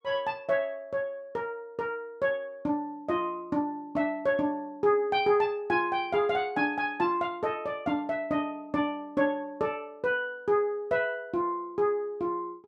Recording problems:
none

